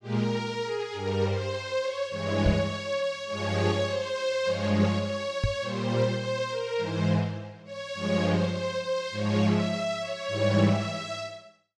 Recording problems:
knock on the microphone; at 2.5 s and at 5.5 s; peak +5 dB vs average level

